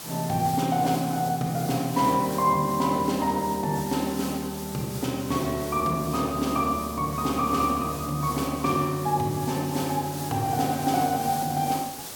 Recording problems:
hiss; SNR 12 dB

